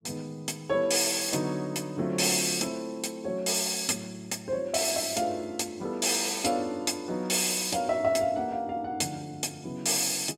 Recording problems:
none

